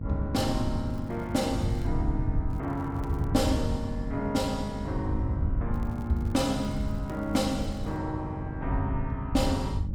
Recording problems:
hum; 50 Hz, harmonics up to 600 Hz, SNR 9 dB
wind on the microphone; below 110 Hz, SNR 4 dB
crackle; from 1 to 2 s, from 2.5 to 3.5 s and from 5.5 to 8 s; loose cable, SNR 28 dB

